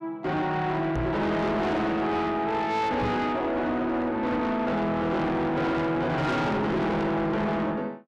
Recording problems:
distortion; soft clipping, signal-to-distortion ratio 7 dB
microphone thump; at 1 s and at 3 s; peak +1 dB vs average level

